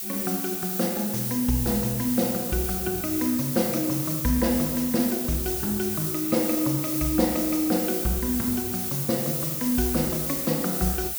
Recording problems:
hiss; SNR 1 dB

